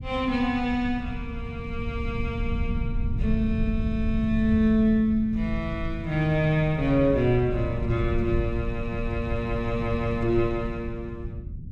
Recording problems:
low-frequency rumble; below 110 Hz, SNR 7 dB

